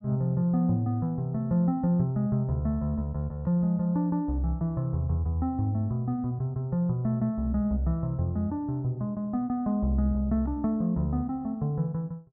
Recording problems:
none

